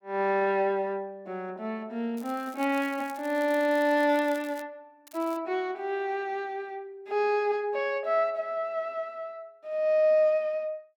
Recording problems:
crackle; from 2 to 4.5 s and at 5 s; loose cable, SNR 22 dB

